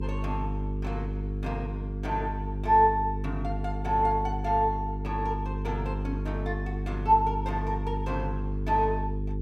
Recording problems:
electrical hum; 50 Hz, harmonics up to 450 Hz, SNR 4 dB

